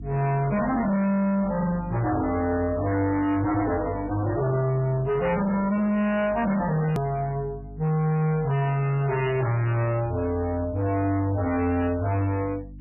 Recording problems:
codec artefacts; MP3, log-spectral distance 3 dB, nothing above 2.5 kHz
distorted audio; hard clipping, signal-to-distortion ratio 7 dB
hum; 50 Hz, harmonics up to 600 Hz, SNR 16 dB
hard cut with a click; at 7 s

